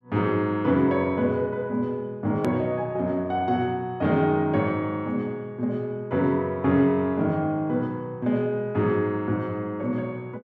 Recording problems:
edit click; at 2.5 s

